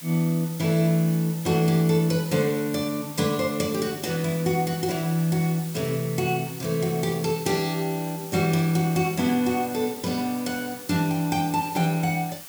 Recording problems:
background hiss; slope 0 dB per octave, SNR 14 dB

